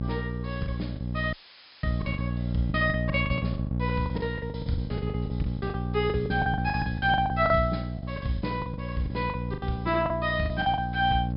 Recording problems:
treble missing; nothing above 5.5 kHz
hum; 60 Hz, harmonics up to 600 Hz, SNR 2 dB
lost packets; 17% of the sound replaced, filled with the last packet
audio cutting out; at 1.5 s for 0.5 s; filled with static

